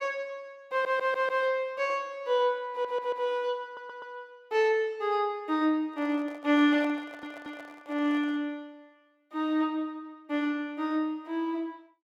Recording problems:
audio stuttering; 4 times, first at 0.5 s
microphone handling noise; from 6 to 8.5 s; peak -10 dB vs average level

